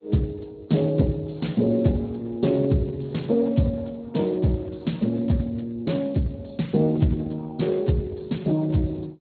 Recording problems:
codec artefacts; MP2, then Speex, log-spectral distance 5 dB, nothing above 4.2 kHz

